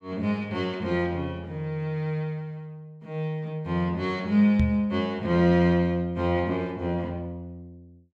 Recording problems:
knock on the microphone; at 4.5 s; peak +4 dB vs average level

